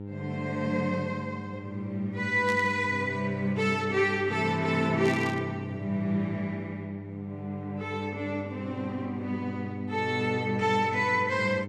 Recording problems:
electrical hum; 50 Hz, harmonics up to 900 Hz, SNR 9 dB
burst of static; at 2.5 s and at 5 s; peak -7 dB vs average level

